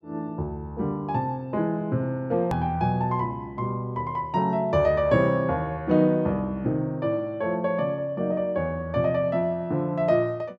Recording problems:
edit click; at 2.5 s

